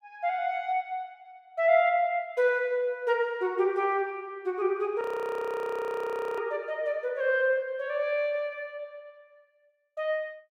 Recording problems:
frozen audio; at 5 s for 1.5 s

